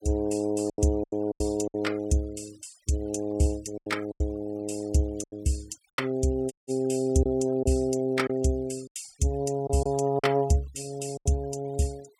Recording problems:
noise reduction artefacts; signal-to-artefact ratio 23 dB
lost packets; 7% of the sound replaced, filled with silence
audio cutting out; at 6.5 s

